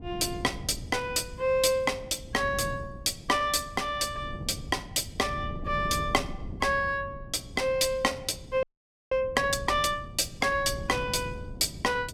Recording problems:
wind noise; below 190 Hz, SNR 13 dB
frozen audio; at 8.5 s

